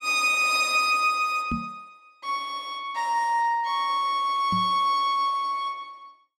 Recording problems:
microphone thump; at 1.5 s and at 4.5 s; peak -2 dB vs average level

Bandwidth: 15.5 kHz